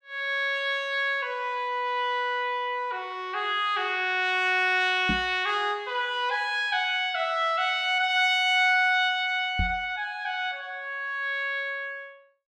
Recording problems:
knock on the microphone; at 5 s and at 9.5 s; peak 0 dB vs average level

